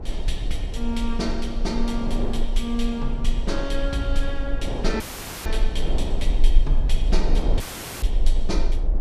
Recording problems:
rumble; below 38 Hz, strongest tone 20 Hz, SNR -2 dB
wind noise; below 500 Hz, SNR 5 dB
dropout; at 5 s and at 7.5 s; filled with static

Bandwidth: 14.5 kHz